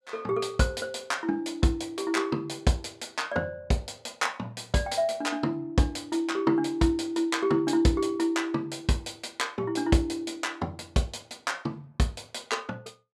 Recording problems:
none

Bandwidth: 14 kHz